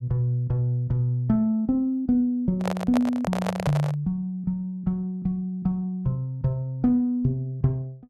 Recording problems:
handling noise; from 2.5 to 4 s; peak +1 dB vs average level

